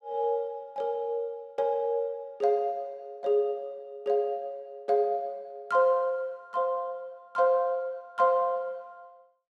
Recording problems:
none

